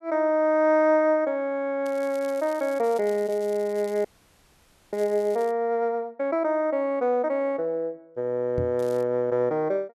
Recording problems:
crackle; from 2 to 5.5 s and at 9 s; loose cable, SNR 25 dB
frozen audio; at 4 s for 1 s
microphone bump; at 8.5 s; peak -3 dB vs average level

